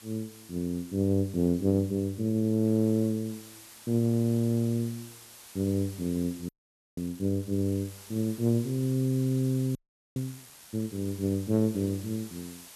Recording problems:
background hiss; slope 0 dB per octave, SNR 19 dB
audio freezing; at 6.5 s and at 10 s

